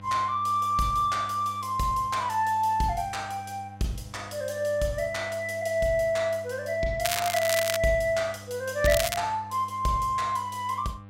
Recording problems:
electrical hum; 50 Hz, harmonics up to 1.3 kHz, SNR 18 dB
crackling; at 7 s and at 9 s; loose cable, SNR 4 dB

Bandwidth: 16 kHz